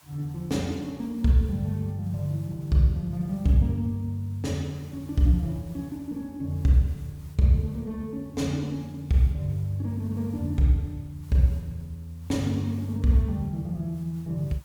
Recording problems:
background hiss; SNR 29 dB

